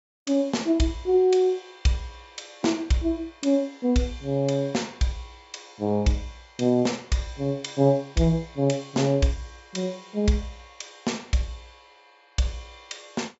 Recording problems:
treble cut off; nothing above 8 kHz

